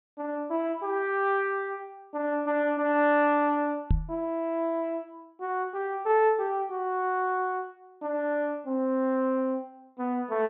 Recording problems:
treble missing; nothing above 4 kHz
microphone thump; at 4 s; peak +6 dB vs average level

